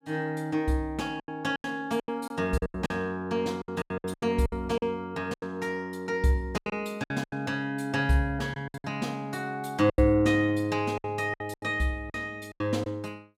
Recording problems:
packet loss; 13% of the sound replaced, filled with silence

